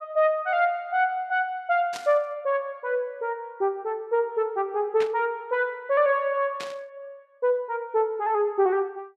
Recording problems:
burst of static; at 2 s, at 5 s and at 6.5 s; peak -6 dB vs average level

